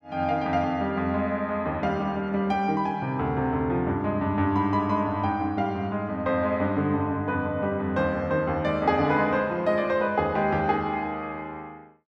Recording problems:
none

